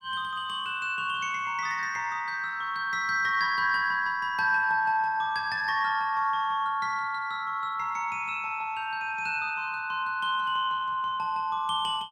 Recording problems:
none

